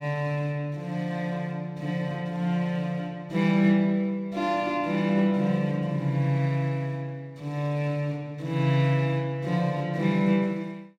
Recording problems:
none

